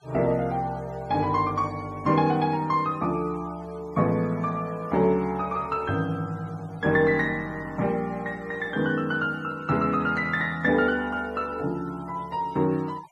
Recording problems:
noise reduction artefacts; signal-to-artefact ratio 25 dB

